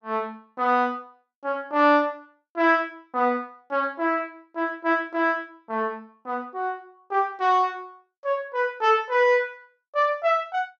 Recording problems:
none

